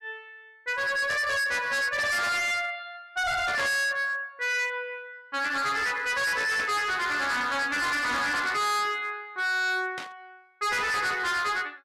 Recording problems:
distortion; hard clipping, signal-to-distortion ratio 6 dB
static burst; 4 times, first at 2 s; peak -6 dB vs average level

